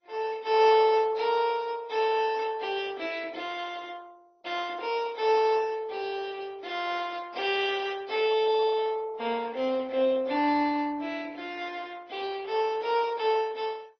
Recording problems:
lossy codec; MP2, then AAC, log-spectral distance 4 dB, nothing above 5.3 kHz

